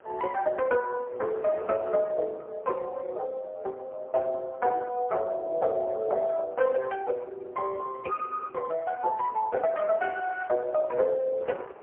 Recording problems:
telephone audio; 340 Hz to 2.2 kHz, AMR-NB, then MP3
wind noise; below 910 Hz, SNR 21 dB

